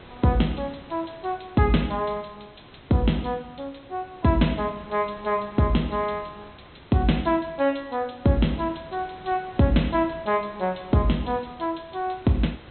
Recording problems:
treble missing; nothing above 4.1 kHz
hiss; SNR 22 dB

